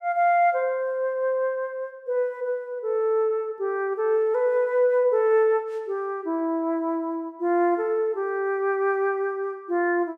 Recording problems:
none

